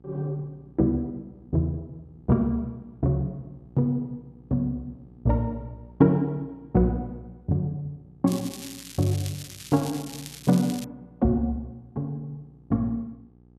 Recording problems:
hum; 60 Hz, harmonics up to 840 Hz, SNR 26 dB
crackling; from 8.5 to 11 s; loose cable, SNR 13 dB

